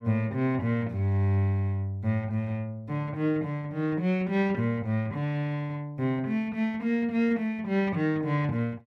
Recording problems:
none

